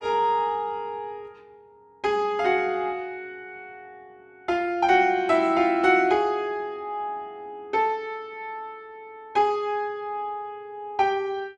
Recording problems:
none

